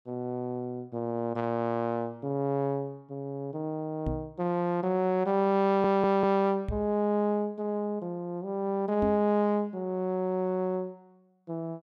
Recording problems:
microphone bump; at 4 s, at 6.5 s and at 9 s; peak -1 dB vs average level
stutter; at 5.5 s

